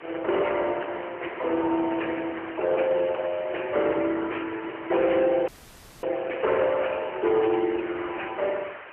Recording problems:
telephone audio; 280 Hz to 3 kHz, AMR-NB
distortion; soft clipping, signal-to-distortion ratio 12 dB
hiss; SNR 15 dB
frozen audio; at 5.5 s for 0.5 s

